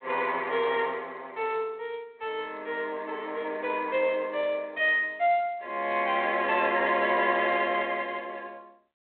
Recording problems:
phone line; 300 Hz to 3.5 kHz, G.726

